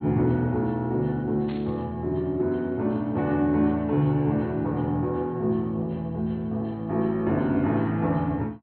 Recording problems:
low-pass filter; nothing above 4.3 kHz
burst of static; at 1.5 s; peak -16 dB vs average level

